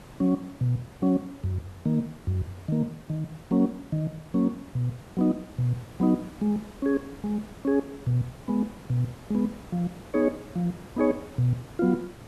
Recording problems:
background hiss; slope -6 dB per octave, SNR 19 dB

